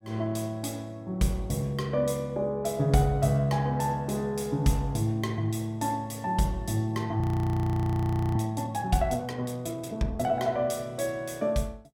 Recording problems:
frozen audio; at 7 s for 1 s

